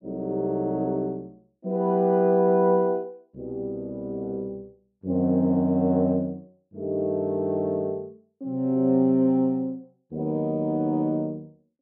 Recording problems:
none

